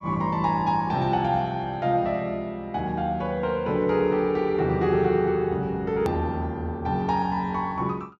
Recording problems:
low-pass filter; nothing above 8 kHz
click at an edit; at 6 s

